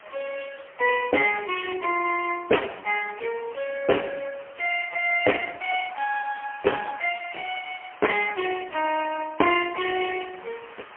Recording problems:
telephone audio; 300 Hz to 3.1 kHz, AMR-NB, then MP3
hiss; SNR 21 dB

